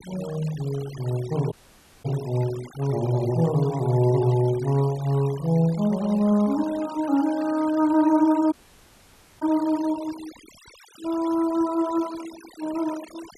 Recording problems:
denoising artefacts; signal-to-artefact ratio 19 dB
audio cutting out; at 1.5 s for 0.5 s and at 8.5 s for 1 s

